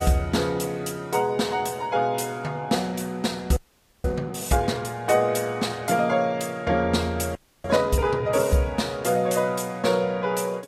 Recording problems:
lossy codec; Vorbis, log-spectral distance 3 dB, nothing above 15.1 kHz
frozen audio; at 3.5 s and at 7.5 s

